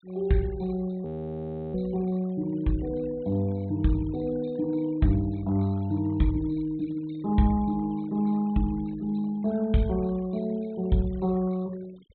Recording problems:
treble missing; nothing above 4 kHz
noise reduction artefacts; signal-to-artefact ratio 26 dB
audio freezing; at 1 s for 0.5 s

